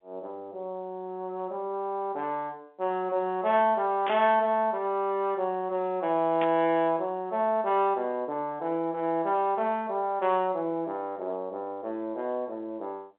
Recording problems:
phone line; 170 Hz to 3.7 kHz, G.711
static burst; at 4 s and at 6.5 s; peak -4 dB vs average level

